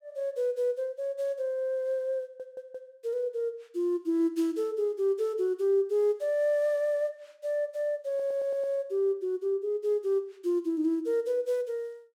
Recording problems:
stutter; at 2 s and at 8 s

